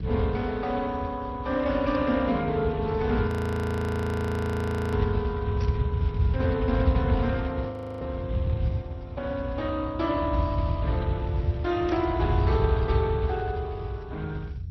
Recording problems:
lossy codec; Speex, then MP2, log-spectral distance 2 dB, nothing above 13.1 kHz
low-frequency rumble; below 110 Hz, SNR 1 dB
audio freezing; at 3.5 s for 1.5 s and at 7.5 s
static burst; at 5.5 s and at 12 s; peak -11 dB vs average level

